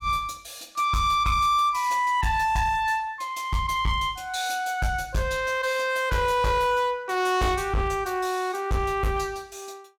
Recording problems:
distortion; hard clipping, uneven, signal-to-distortion ratio 10 dB

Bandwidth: 17 kHz